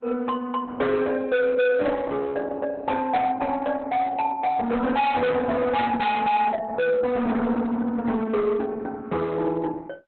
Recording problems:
codec artefacts; Opus, log-spectral distance 3 dB, nothing above 4 kHz
distortion; hard clipping, signal-to-distortion ratio 6 dB

